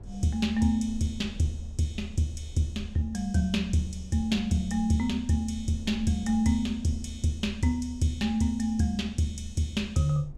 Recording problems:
rumble; below 66 Hz, SNR 19 dB

